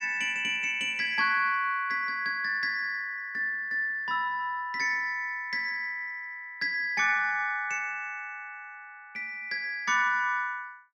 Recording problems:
none

